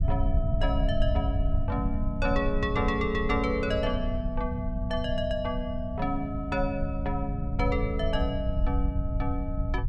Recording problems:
rumble; below 88 Hz, SNR 1 dB

